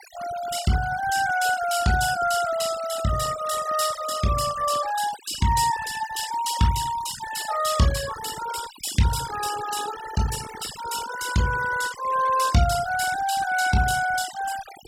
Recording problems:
denoising artefacts; signal-to-artefact ratio 11 dB

